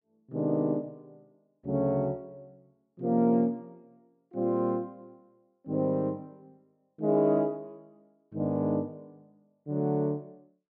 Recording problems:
none

